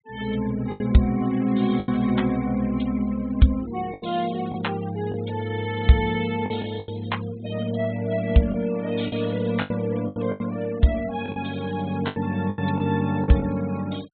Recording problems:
treble missing; nothing above 4 kHz
noise reduction artefacts; signal-to-artefact ratio 20 dB
lost packets; 7% of the sound replaced, filled with the last packet

